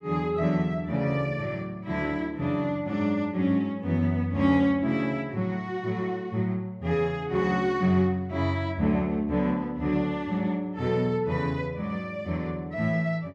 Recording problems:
none

